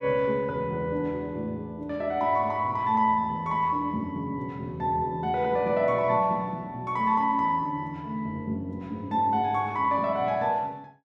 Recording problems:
none

